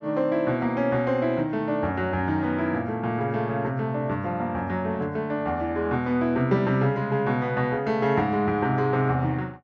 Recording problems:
none

